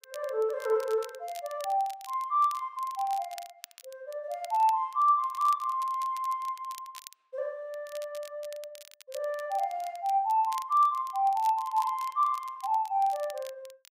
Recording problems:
crackling; vinyl, SNR 21 dB

